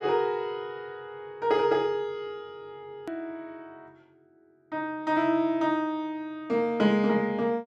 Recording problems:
edit click; at 3 s

